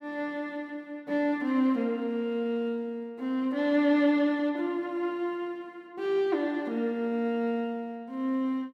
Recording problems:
none

